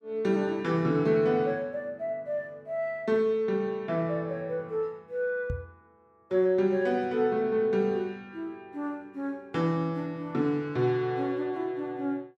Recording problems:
microphone thump; at 5.5 s; peak -1 dB vs average level

